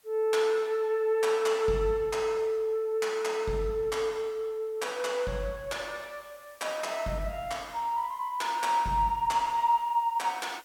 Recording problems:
background hiss; slope 0 dB per octave, SNR 30 dB

